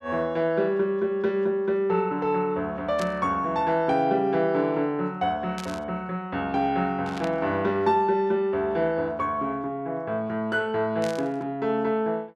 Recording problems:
burst of static; 4 times, first at 3 s; peak -8 dB vs average level

